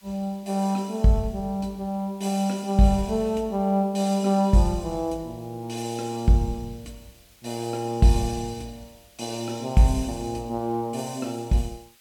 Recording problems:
background hiss; slope +2 dB per octave, SNR 29 dB

